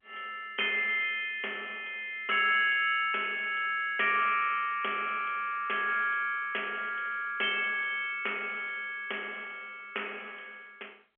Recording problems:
telephone audio; 320 Hz to 3.3 kHz, G.711

